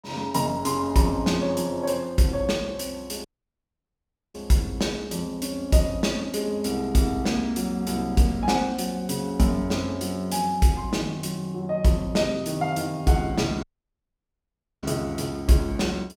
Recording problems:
audio cutting out; at 3.5 s for 1 s and at 14 s for 1 s

